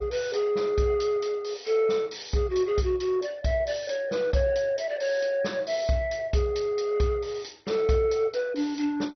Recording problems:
lossy compression; MP2, log-spectral distance 5 dB, nothing above 6 kHz

